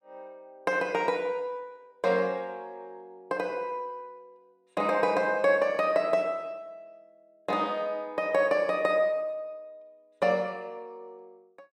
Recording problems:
none

